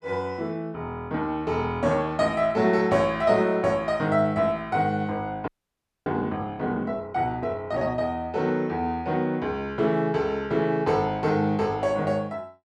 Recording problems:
audio freezing; at 5.5 s for 0.5 s

